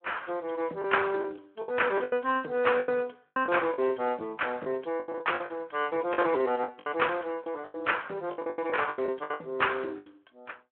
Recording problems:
phone line; 220 Hz to 3.2 kHz, Speex
lost packets; 14% of the sound replaced, filled with the last packet

